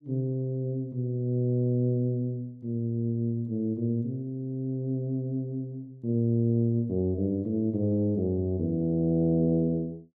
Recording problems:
none

